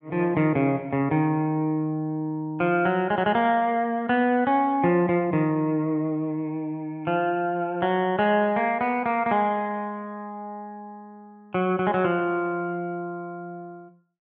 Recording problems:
none

